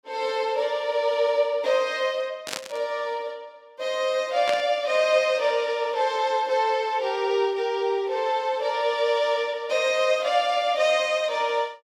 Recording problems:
burst of static; at 2.5 s and at 4.5 s; peak -2 dB vs average level

